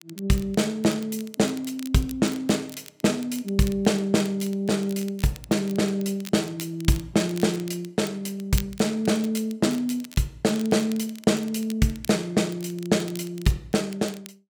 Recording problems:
crackle; vinyl, SNR 19 dB

